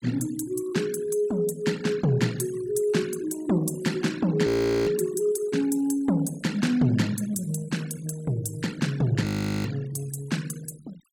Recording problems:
denoising artefacts; signal-to-artefact ratio 19 dB
frozen audio; at 4.5 s and at 9.5 s

